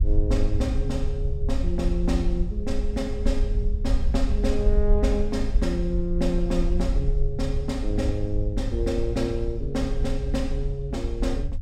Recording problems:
low-frequency rumble; below 58 Hz, SNR 0 dB

